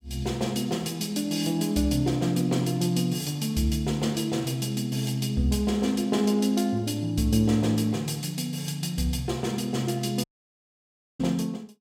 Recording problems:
dropout; at 10 s for 1 s

